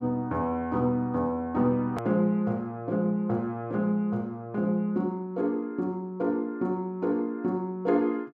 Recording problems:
click at an edit; at 2 s

